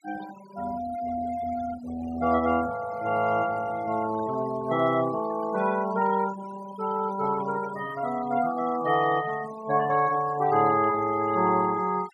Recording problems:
denoising artefacts; signal-to-artefact ratio 17 dB

